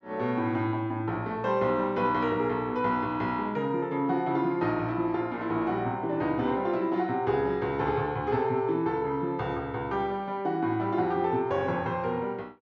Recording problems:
treble cut off; nothing above 8 kHz

